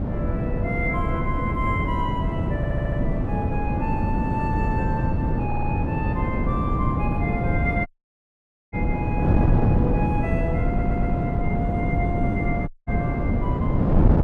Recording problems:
wind noise; below 240 Hz, SNR -6 dB
audio stuttering; at 2.5 s, at 5.5 s and at 11 s
audio cutting out; at 8 s for 1 s and at 13 s

